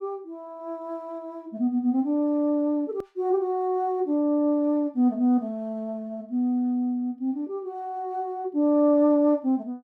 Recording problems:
click at an edit; at 3 s

